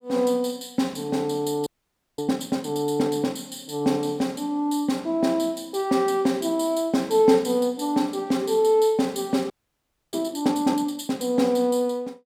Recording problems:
frozen audio; at 1.5 s for 0.5 s and at 9.5 s for 0.5 s

